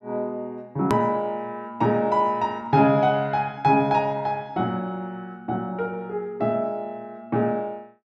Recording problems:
click at an edit; at 1 s

